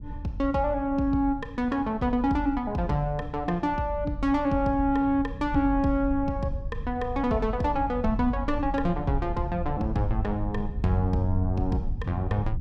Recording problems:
rumble; below 92 Hz, SNR 10 dB

